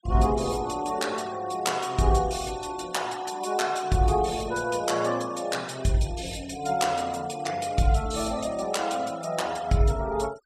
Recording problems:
denoising artefacts; signal-to-artefact ratio 19 dB

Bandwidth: 14.5 kHz